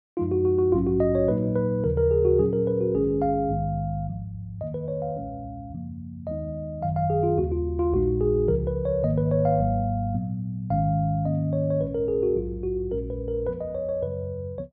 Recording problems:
none

